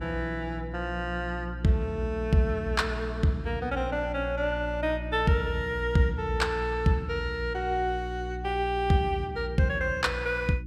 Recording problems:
electrical hum; 60 Hz, harmonics up to 360 Hz, SNR 9 dB

